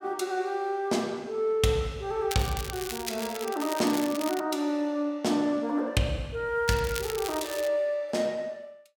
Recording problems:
crackling; from 2.5 to 4.5 s and from 6.5 to 7.5 s; loose cable, SNR 9 dB

